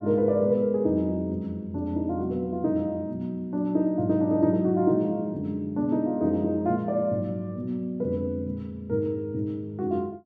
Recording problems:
none

